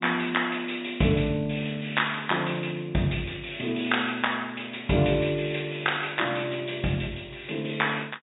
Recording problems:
treble missing; nothing above 4 kHz

